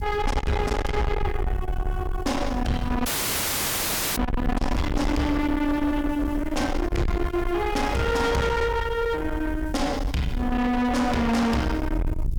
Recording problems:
distorted audio; soft clipping, signal-to-distortion ratio 6 dB
background hiss; slope +5 dB per octave, SNR 28 dB
wind on the microphone; below 300 Hz, SNR 5 dB
dropout; at 3 s for 1 s

